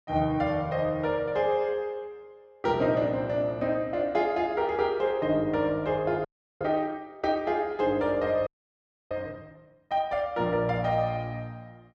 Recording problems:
frozen audio; at 6.5 s and at 8.5 s for 0.5 s

